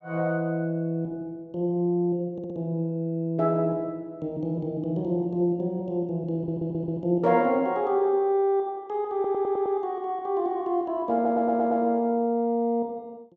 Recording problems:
audio stuttering; 4 times, first at 2.5 s

